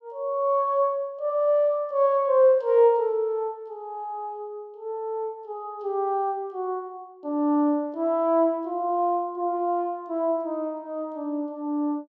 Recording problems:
none

